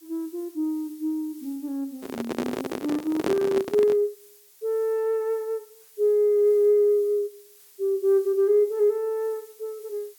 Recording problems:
hiss; slope +3 dB per octave, SNR 26 dB
handling noise; from 2 to 4 s; peak +2 dB vs average level

